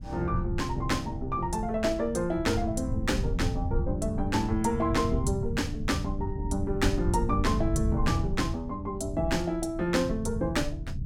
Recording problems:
low-frequency rumble; below 120 Hz, SNR 4 dB

